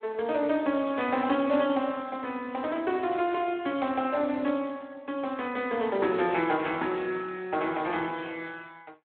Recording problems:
phone line; 220 Hz to 3.7 kHz, Speex

